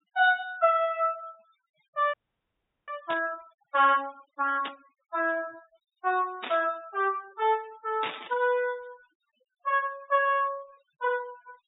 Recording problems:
treble cut off; nothing above 4 kHz
denoising artefacts; signal-to-artefact ratio 26 dB
audio freezing; at 2 s for 0.5 s
burst of static; 4 times, first at 3 s; peak -2 dB vs average level

